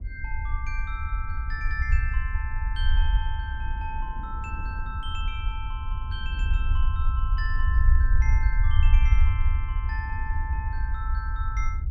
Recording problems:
low-frequency rumble; below 68 Hz, SNR -9 dB
wind noise; below 220 Hz, SNR 12 dB

